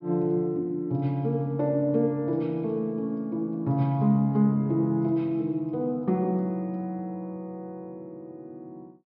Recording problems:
treble missing; nothing above 5.5 kHz

